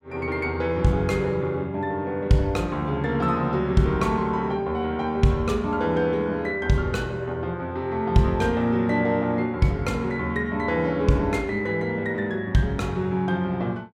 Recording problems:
none

